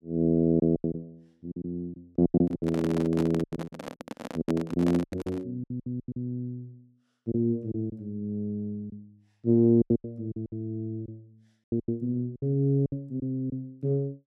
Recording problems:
lost packets; 14% of the sound replaced, filled with silence
microphone handling noise; from 2.5 to 5.5 s; peak -2 dB vs average level

